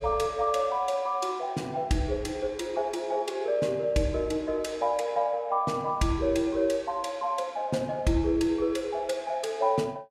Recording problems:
none

